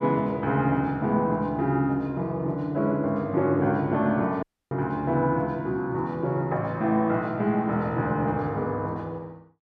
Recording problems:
dropout; at 4.5 s

